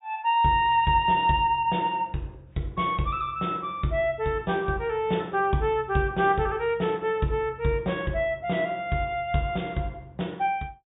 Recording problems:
treble cut off; nothing above 4 kHz

